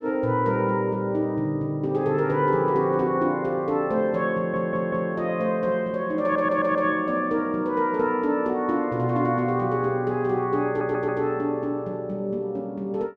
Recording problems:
stutter; at 4.5 s, at 6 s and at 11 s

